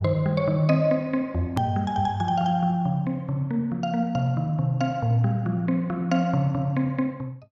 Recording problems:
hard cut with a click; at 1.5 s

